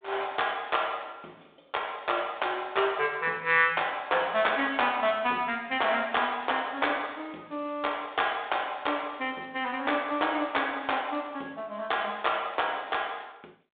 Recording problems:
phone line; 280 Hz to 3.7 kHz, G.726

